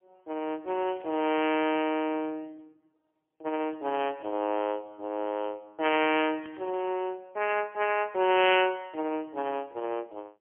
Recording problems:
telephone audio; 240 Hz to 3.2 kHz, AMR-NB, then MP3
crackle; at 0.5 s and at 6.5 s; loose cable, SNR 27 dB

